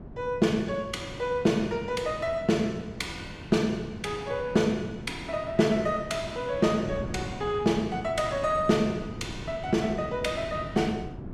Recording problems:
wind on the microphone; below 290 Hz, SNR 13 dB

